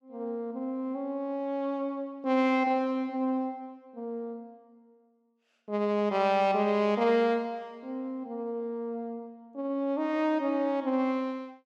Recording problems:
none

